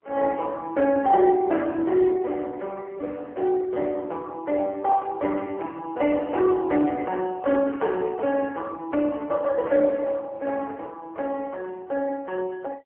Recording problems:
telephone audio; 240 Hz to 3.3 kHz, AMR-NB

